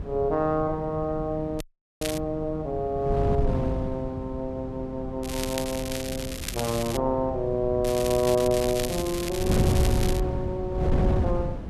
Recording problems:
wind noise; below 200 Hz, SNR 3 dB
crackle; at 1.5 s, from 5 to 7 s and from 8 to 10 s; loose cable, SNR 7 dB
audio cutting out; at 1.5 s

